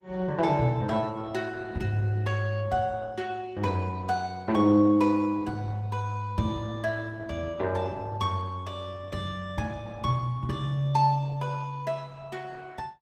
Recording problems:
codec artefacts; Opus, log-spectral distance 3 dB, nothing above 15.5 kHz

